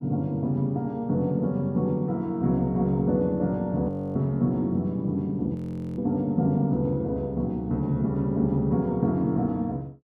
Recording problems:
audio freezing; at 4 s and at 5.5 s

